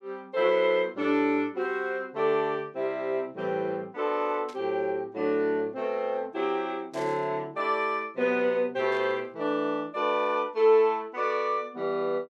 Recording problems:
burst of static; at 4.5 s, at 7 s and at 9 s; peak -15 dB vs average level

